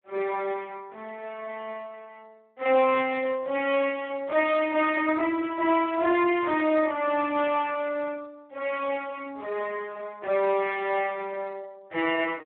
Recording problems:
telephone audio; 320 Hz to 3.4 kHz, Speex

